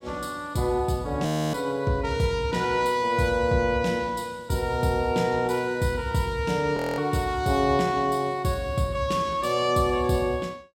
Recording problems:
frozen audio; at 1.5 s and at 7 s

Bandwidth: 16 kHz